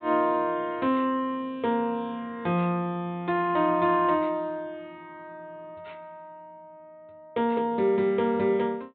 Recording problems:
low-pass filter; nothing above 4 kHz

